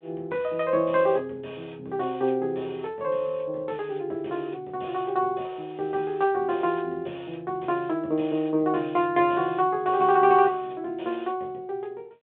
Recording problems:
telephone audio; 220 Hz to 3.7 kHz, G.726

